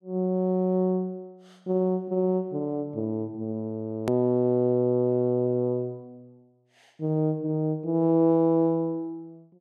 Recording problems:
edit click; at 4 s

